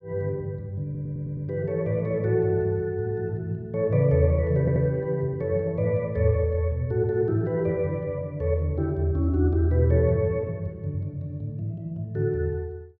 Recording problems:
audio stuttering; at 1 s and at 4.5 s

